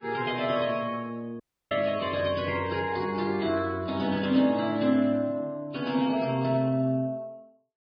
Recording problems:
codec artefacts; MP3, then Vorbis, log-spectral distance 3 dB
dropout; at 1.5 s

